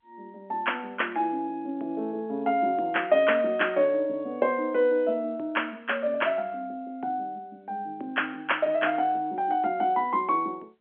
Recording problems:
telephone audio; 220 Hz to 3.3 kHz, G.711

